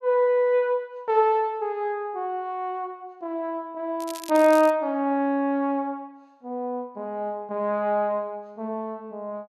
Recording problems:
crackling; at 4 s; loose cable, SNR 16 dB

